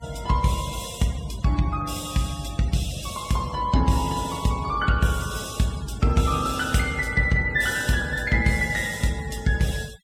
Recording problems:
denoising artefacts; signal-to-artefact ratio 19 dB

